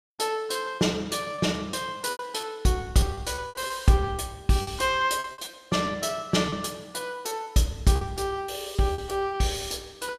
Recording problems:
lost packets; 8% of the sound replaced, filled with repeated pitch periods

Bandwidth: 15 kHz